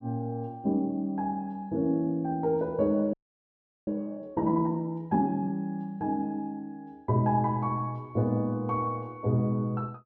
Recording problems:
audio freezing; at 3 s for 0.5 s

